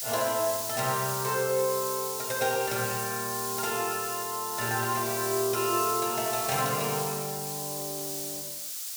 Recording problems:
background hiss; slope +5 dB per octave, SNR 2 dB

